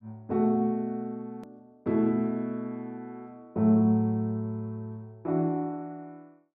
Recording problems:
hard cut with a click; at 1.5 s

